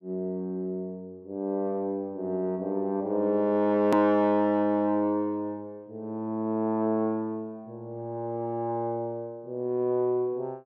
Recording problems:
hard cut with a click; at 4 s

